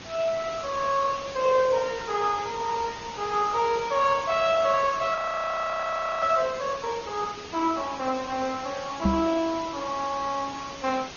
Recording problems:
codec artefacts; Opus, then MP2, log-spectral distance 7 dB, nothing above 6 kHz
background hiss; slope -2 dB per octave, SNR 13 dB
audio freezing; at 5 s for 1 s
knock on the microphone; at 9 s; peak +6 dB vs average level

